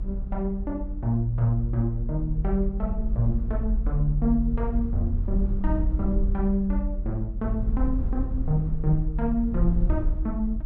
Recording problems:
low-frequency rumble; below 52 Hz, strongest tone 36 Hz, SNR 1 dB

